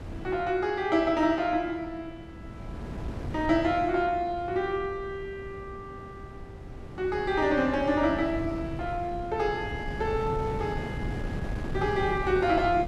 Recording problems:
wind noise; below 290 Hz, SNR 10 dB

